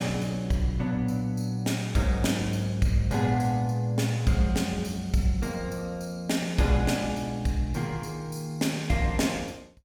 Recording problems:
none

